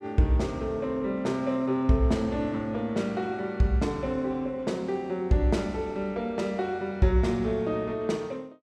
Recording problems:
none

